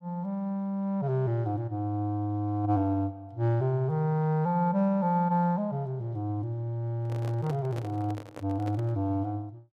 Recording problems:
handling noise; from 7 to 9 s; peak -8 dB vs average level

